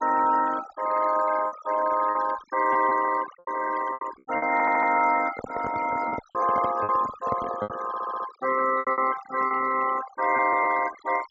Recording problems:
low-pass filter; nothing above 8 kHz
noise reduction artefacts; signal-to-artefact ratio 12 dB
lost packets; 8% of the sound replaced, filled with repeated pitch periods
audio stuttering; at 4.5 s and at 8 s
handling noise; from 5 to 8 s; peak -2 dB vs average level

